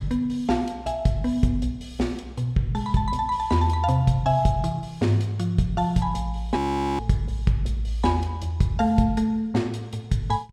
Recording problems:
audio freezing; at 6.5 s

